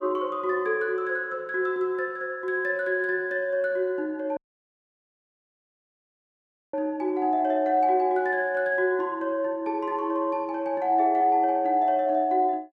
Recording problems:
audio cutting out; at 4.5 s for 2.5 s

